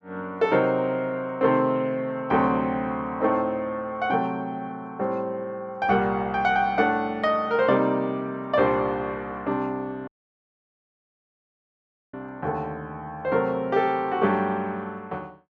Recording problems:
audio cutting out; at 10 s for 2 s

